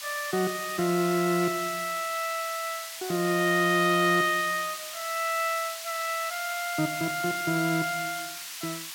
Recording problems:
background hiss; SNR 9 dB

